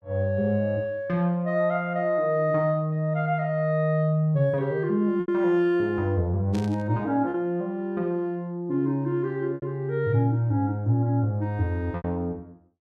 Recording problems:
packet loss; 2% of the sound replaced, filled with repeated pitch periods
burst of static; at 6.5 s; peak -12 dB vs average level

